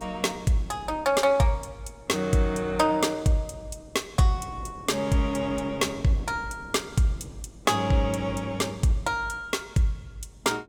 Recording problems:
wind noise; below 440 Hz, SNR 20 dB

